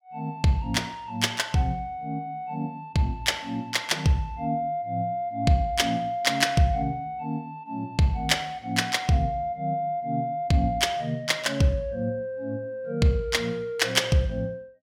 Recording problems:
none

